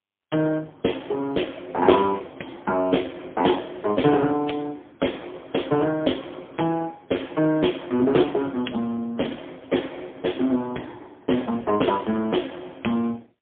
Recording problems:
phone line; 190 Hz to 3.5 kHz, AMR-NB, then MP3

